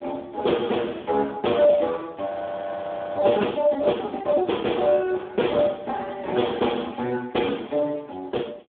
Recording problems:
phone line; 190 Hz to 3.5 kHz, Speex
frozen audio; at 2.5 s for 1 s

